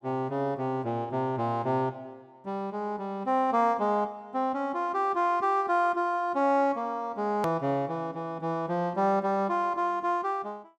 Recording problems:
hard cut with a click; at 7.5 s

